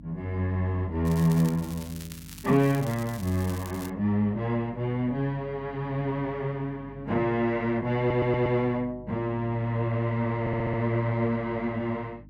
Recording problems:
hum; 50 Hz, harmonics up to 300 Hz, SNR 20 dB
crackle; from 1 to 4 s; loose cable, SNR 17 dB
audio stuttering; at 8 s and at 10 s

